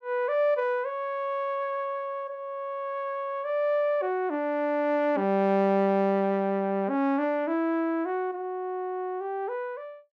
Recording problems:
none

